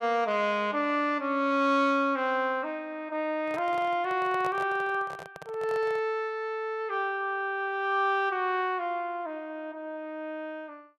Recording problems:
handling noise; from 3.5 to 6 s; peak -6 dB vs average level

